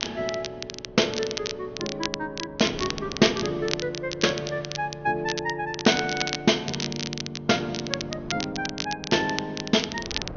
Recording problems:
treble cut off; nothing above 6.4 kHz
wind noise; below 530 Hz, SNR 20 dB
crackle; vinyl, SNR 7 dB

